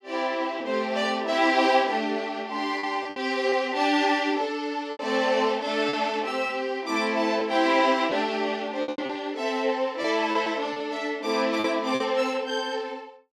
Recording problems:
lost packets; 5% of the sound replaced, filled with repeated pitch periods

